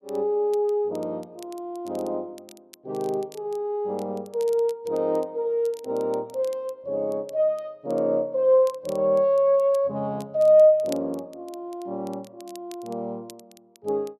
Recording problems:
crackle; vinyl, SNR 27 dB

